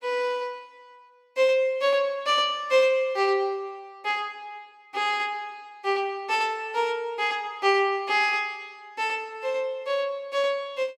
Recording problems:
none

